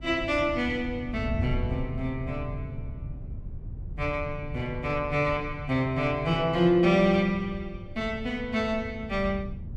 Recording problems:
wind on the microphone; below 120 Hz, SNR 11 dB

